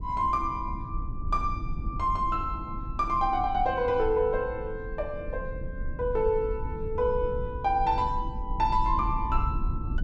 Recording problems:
low-frequency rumble; below 78 Hz, SNR 8 dB

